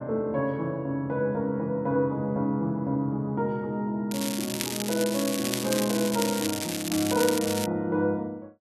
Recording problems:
crackling; from 4 to 7.5 s; loose cable, SNR 4 dB

